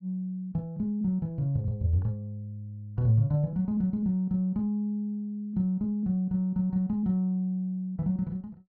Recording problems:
none

